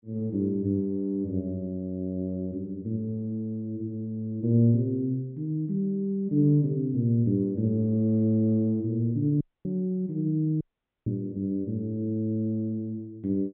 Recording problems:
treble missing; nothing above 4 kHz
audio cutting out; at 9.5 s and at 11 s

